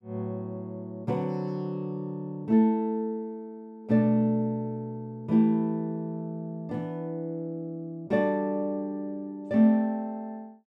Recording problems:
none

